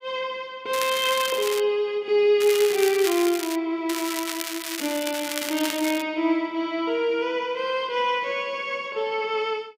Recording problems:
crackle; at 0.5 s, from 2.5 to 3.5 s and from 4 to 6 s; loose cable, SNR 7 dB

